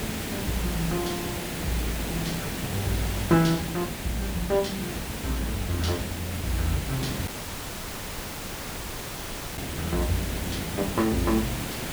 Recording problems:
background hiss; slope -4 dB per octave, SNR 3 dB
dropout; at 7.5 s for 2.5 s

